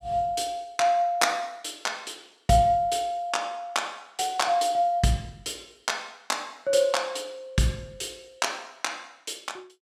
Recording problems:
none

